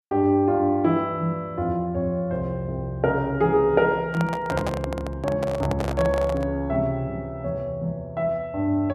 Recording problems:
handling noise; from 4 to 6.5 s; peak 0 dB vs average level

